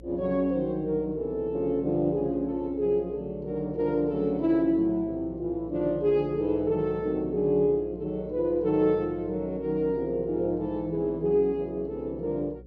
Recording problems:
hum; 60 Hz, harmonics up to 540 Hz, SNR 21 dB

